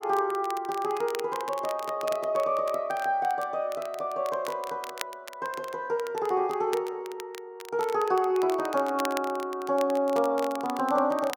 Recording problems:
crackle; vinyl, SNR 16 dB

